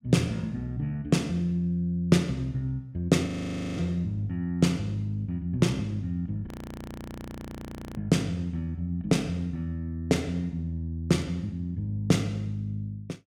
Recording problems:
audio freezing; at 3.5 s for 0.5 s and at 6.5 s for 1.5 s

